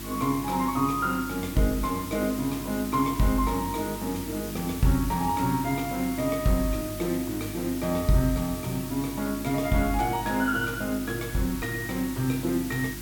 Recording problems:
electrical hum; 50 Hz, harmonics up to 350 Hz, SNR 12 dB
background hiss; slope +1 dB per octave, SNR 11 dB

